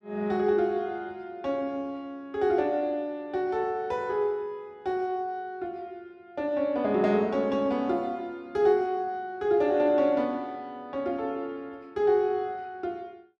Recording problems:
none

